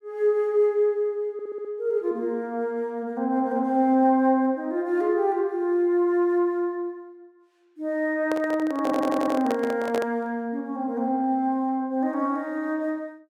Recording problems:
audio stuttering; at 1.5 s and at 9 s
microphone handling noise; from 8 to 10 s; peak -1 dB vs average level

